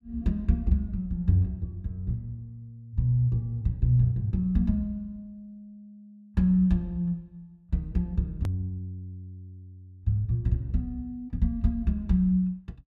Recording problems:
click at an edit; at 8.5 s

